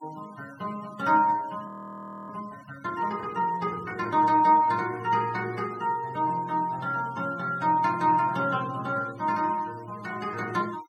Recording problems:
denoising artefacts; signal-to-artefact ratio 23 dB
audio freezing; at 1.5 s for 0.5 s

